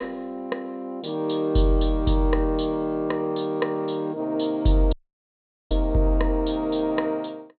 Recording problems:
low-pass filter; nothing above 4.2 kHz
dropout; at 5 s for 1 s

